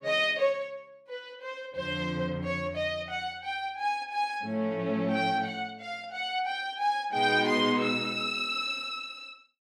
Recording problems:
none

